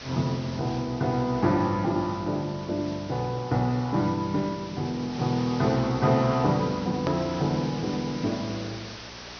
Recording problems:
treble missing; nothing above 6.1 kHz
hum; 60 Hz, harmonics up to 1.3 kHz, SNR 23 dB
background hiss; slope -1 dB per octave, SNR 15 dB
click at an edit; at 7 s

